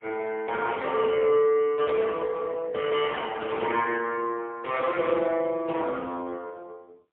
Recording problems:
phone line; 280 Hz to 3.4 kHz, AMR-NB, then MP3

